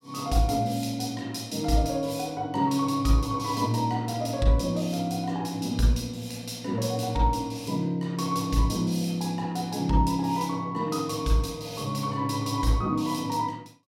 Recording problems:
none

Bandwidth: 16.5 kHz